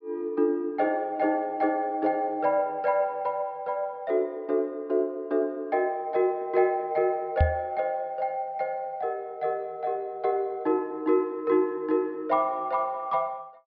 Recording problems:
treble missing; nothing above 5.5 kHz
microphone bump; at 7.5 s; peak +8 dB vs average level

